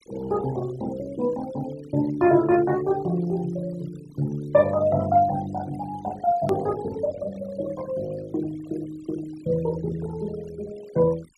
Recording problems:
denoising artefacts; signal-to-artefact ratio 19 dB
edit click; at 6.5 s

